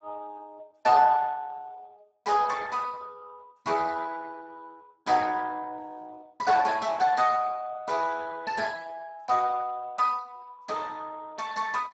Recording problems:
lossy compression; Speex, log-spectral distance 4 dB, nothing above 7.3 kHz

